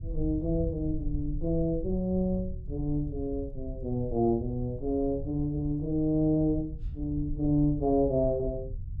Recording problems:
low-frequency rumble; below 82 Hz, SNR 9 dB

